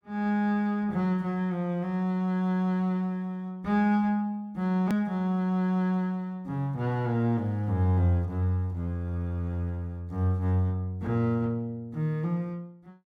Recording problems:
click at an edit; at 5 s

